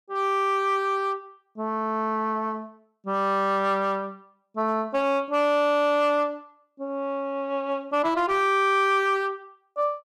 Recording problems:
distortion; hard clipping, uneven, signal-to-distortion ratio 10 dB

